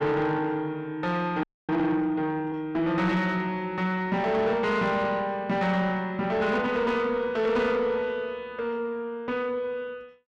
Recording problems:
distorted audio; soft clipping, signal-to-distortion ratio 12 dB
audio freezing; at 1.5 s

